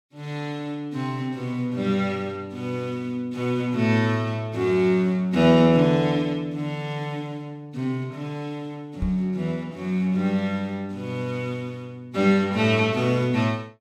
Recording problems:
microphone bump; at 9 s; peak -1 dB vs average level

